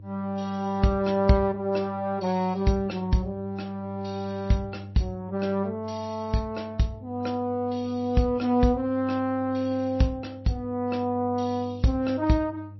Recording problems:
lossy compression; MP3, log-spectral distance 2 dB, nothing above 5.8 kHz
hum; 50 Hz, harmonics up to 300 Hz, SNR 16 dB

